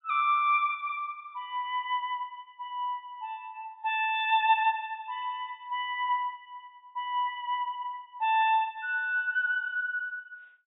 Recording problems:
treble cut off; nothing above 4 kHz

